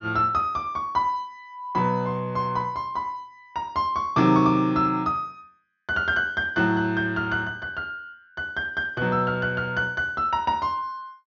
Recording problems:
treble cut off; nothing above 6.8 kHz

